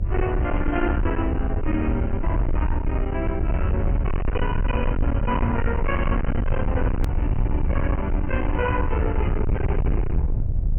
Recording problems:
treble cut off; nothing above 3 kHz
distortion; hard clipping, signal-to-distortion ratio 7 dB
electrical hum; 60 Hz, harmonics up to 660 Hz, SNR 10 dB
rumble; below 98 Hz, SNR -2 dB
hard cut with a click; at 7 s

